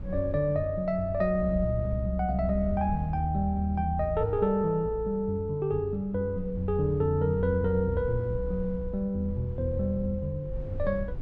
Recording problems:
low-frequency rumble; below 92 Hz, SNR 13 dB

